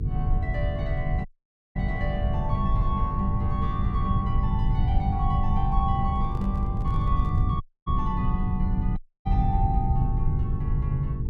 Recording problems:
hum; 50 Hz, harmonics up to 450 Hz, SNR 5 dB
low-frequency rumble; below 110 Hz, SNR -4 dB
dropout; at 1.5 s for 0.5 s, at 7.5 s and at 9 s
handling noise; from 6 to 7.5 s; peak -10 dB vs average level

